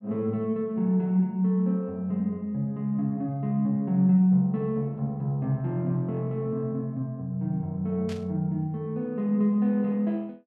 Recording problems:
static burst; at 8 s; peak -12 dB vs average level

